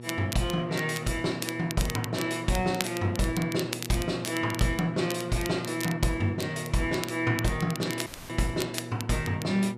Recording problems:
electrical hum; 60 Hz, harmonics up to 1.3 kHz, SNR 12 dB
crackling; vinyl, SNR 10 dB
audio cutting out; at 8 s

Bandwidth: 14.5 kHz